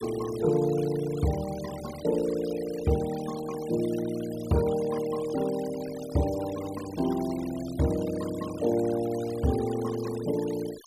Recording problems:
noise reduction artefacts; signal-to-artefact ratio 16 dB

